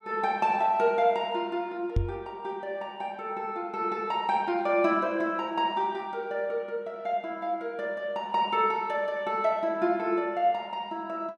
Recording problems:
microphone thump; at 2 s; peak +5 dB vs average level

